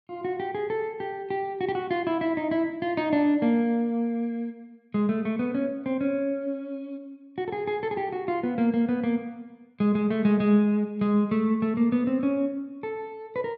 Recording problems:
none

